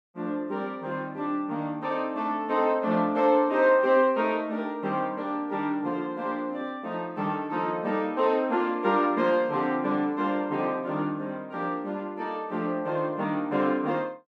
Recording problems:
none

